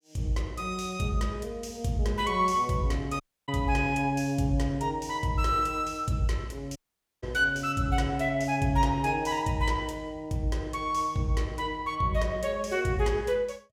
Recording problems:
audio cutting out; at 3 s and at 7 s

